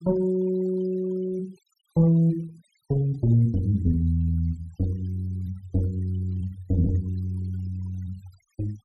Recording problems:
noise reduction artefacts; signal-to-artefact ratio 28 dB

